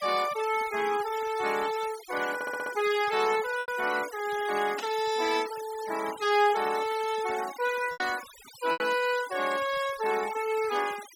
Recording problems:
noise reduction artefacts; signal-to-artefact ratio 13 dB
packet loss; 2% of the sound replaced, filled with repeated pitch periods
stutter; at 2.5 s
static burst; at 5 s; peak -5 dB vs average level

